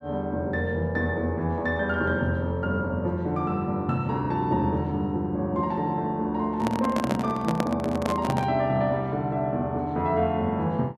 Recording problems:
handling noise; from 6.5 to 8.5 s; peak +3 dB vs average level

